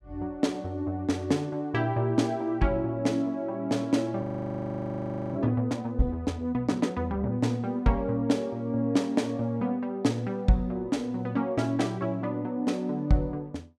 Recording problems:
frozen audio; at 4 s for 1 s

